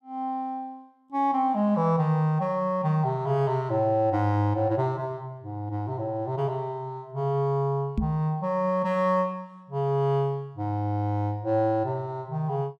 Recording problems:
microphone thump; at 8 s; peak +3 dB vs average level

